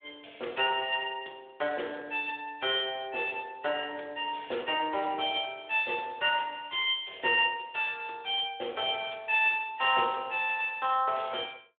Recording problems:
phone line; 340 Hz to 3.6 kHz, Speex

